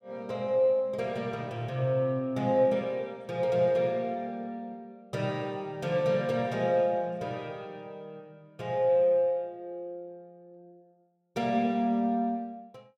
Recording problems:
none

